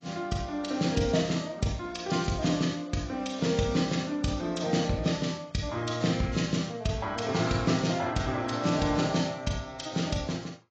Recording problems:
lossy codec; AAC, log-spectral distance 4 dB, nothing above 7.3 kHz

